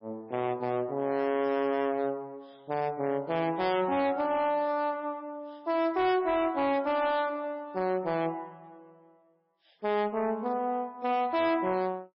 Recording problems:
codec artefacts; MP3, log-spectral distance 2 dB, nothing above 5.3 kHz
distortion; hard clipping, signal-to-distortion ratio 11 dB

